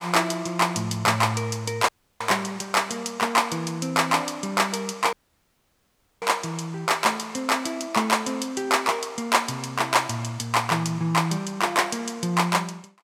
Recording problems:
audio cutting out; at 2 s and at 5 s for 1 s

